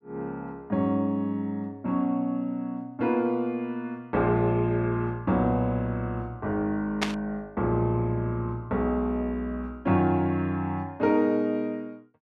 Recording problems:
burst of static; at 7 s; peak +5 dB vs average level

